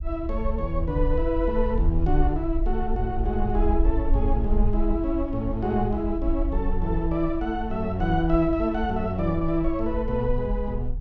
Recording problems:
low-frequency rumble; below 56 Hz, SNR 4 dB

